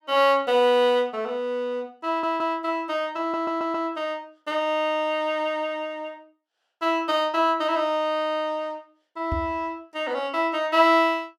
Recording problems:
stutter; at 2 s and at 3 s
microphone bump; at 9.5 s; peak -2 dB vs average level

